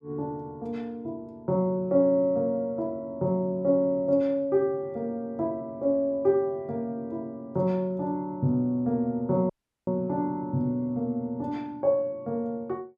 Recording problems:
audio cutting out; at 9.5 s

